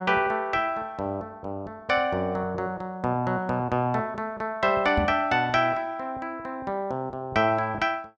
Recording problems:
microphone thump; at 5 s; peak +2 dB vs average level

